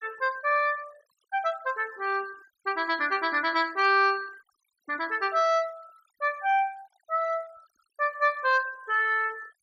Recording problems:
noise reduction artefacts; signal-to-artefact ratio 24 dB

